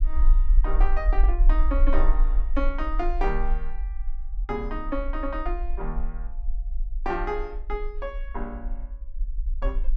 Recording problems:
low-frequency rumble; below 40 Hz, strongest tone 20 Hz, SNR -4 dB

